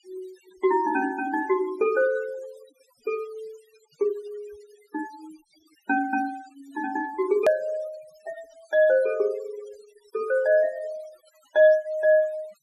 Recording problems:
denoising artefacts; signal-to-artefact ratio 22 dB
hard cut with a click; at 7.5 s

